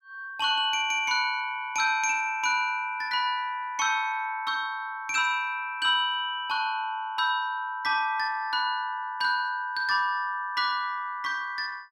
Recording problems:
none

